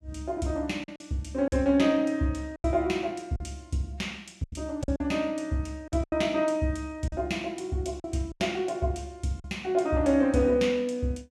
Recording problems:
packet loss; 7% of the sound replaced, filled with silence

